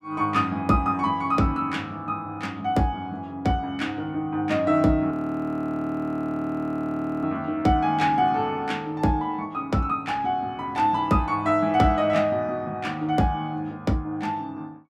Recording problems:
audio freezing; at 5 s for 2 s

